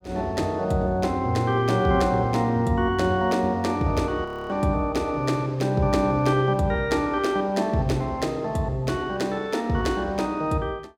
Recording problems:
audio freezing; at 4.5 s

